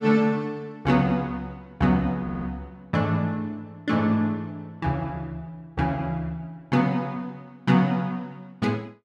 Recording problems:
stutter; at 2 s

